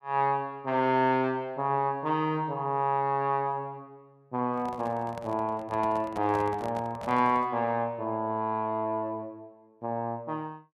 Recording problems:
microphone handling noise; from 4.5 to 7.5 s; peak -8 dB vs average level

